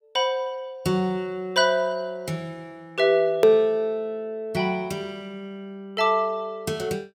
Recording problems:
hard cut with a click; at 3.5 s

